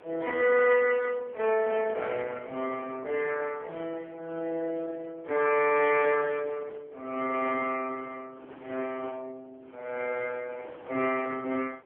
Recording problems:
phone line; 280 Hz to 3.1 kHz, AMR-NB
wind on the microphone; below 1 kHz, SNR 22 dB

